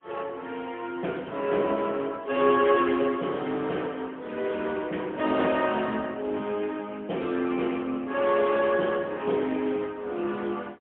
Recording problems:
phone line; 220 Hz to 3.3 kHz, AMR-NB, then MP3

